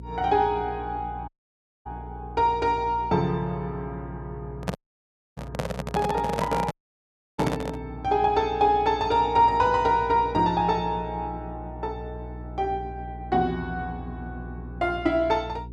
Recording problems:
hum; 60 Hz, harmonics up to 480 Hz, SNR 15 dB
dropout; at 1.5 s for 0.5 s, at 5 s for 0.5 s and at 6.5 s for 0.5 s
handling noise; from 4.5 to 8 s; peak +1 dB vs average level

